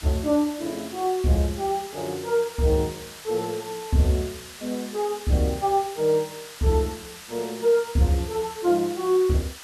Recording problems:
background hiss; SNR 15 dB

